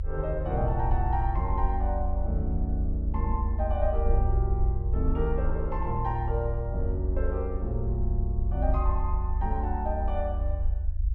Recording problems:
low-frequency rumble; below 78 Hz, SNR -2 dB

